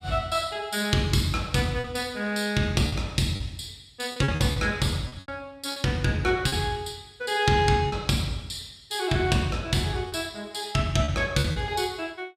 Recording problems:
packet loss; 6% of the sound replaced, filled with repeated pitch periods

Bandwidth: 15.5 kHz